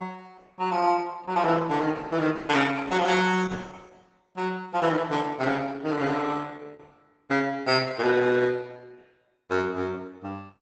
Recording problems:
codec artefacts; Opus, log-spectral distance 4 dB, nothing above 7.8 kHz

